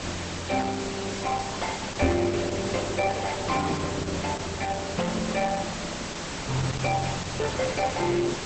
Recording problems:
lossy compression; Opus, log-spectral distance 13 dB, nothing above 8 kHz
background hiss; slope -3 dB per octave, SNR 5 dB
microphone bump; at 2 s; peak +5 dB vs average level

